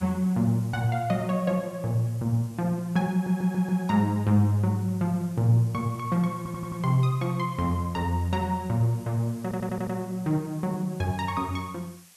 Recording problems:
background hiss; slope +2 dB per octave, SNR 25 dB
stutter; at 3 s, at 6.5 s and at 9.5 s

